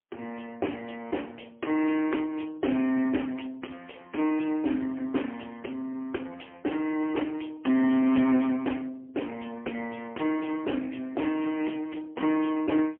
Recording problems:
phone line; 220 Hz to 3.2 kHz, AMR-NB, then MP3

